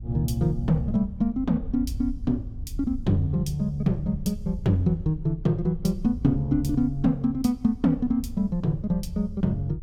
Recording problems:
wind noise; below 78 Hz, SNR 13 dB

